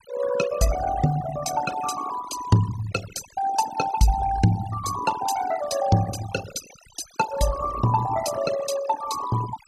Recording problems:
noise reduction artefacts; signal-to-artefact ratio 11 dB

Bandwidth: 15 kHz